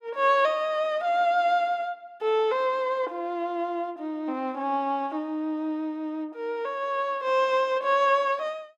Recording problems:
none

